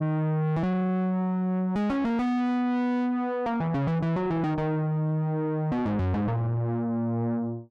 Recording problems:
distorted audio; soft clipping, signal-to-distortion ratio 5 dB

